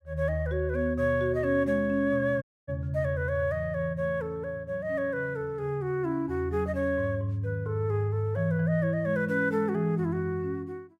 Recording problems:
dropout; at 2.5 s

